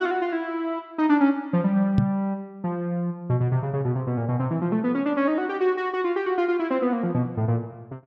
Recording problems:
microphone bump; at 2 s; peak +7 dB vs average level

